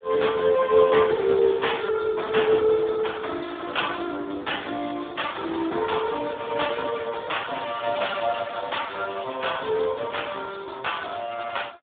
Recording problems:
phone line; 190 Hz to 3.6 kHz, Speex

